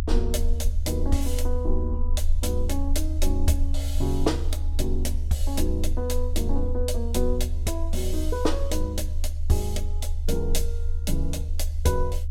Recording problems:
rumble; below 74 Hz, strongest tone 22 Hz, SNR -1 dB

